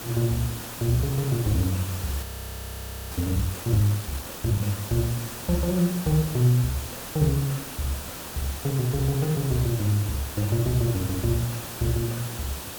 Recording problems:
background hiss; SNR 9 dB
frozen audio; at 2 s for 1 s

